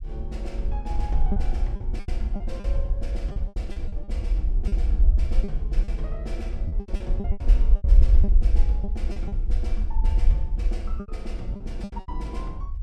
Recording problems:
rumble; below 54 Hz, SNR -12 dB
lost packets; 11% of the sound replaced, filled with repeated pitch periods

